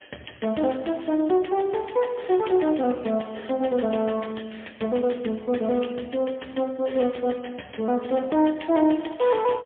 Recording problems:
phone line; 170 Hz to 3.3 kHz, AMR-NB, then MP3

